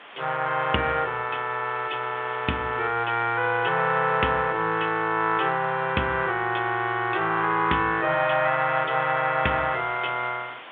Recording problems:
phone line; 130 Hz to 3.5 kHz, G.726
background hiss; SNR 19 dB

